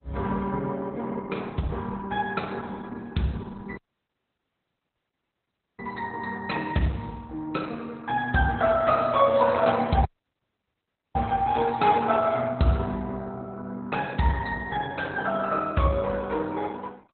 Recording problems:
lossy compression; Opus, log-spectral distance 3 dB, nothing above 4 kHz
dropout; at 4 s for 2 s and at 10 s for 1 s

